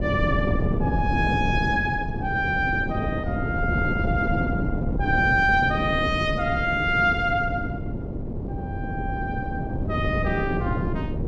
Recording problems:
wind on the microphone; below 290 Hz, SNR 3 dB

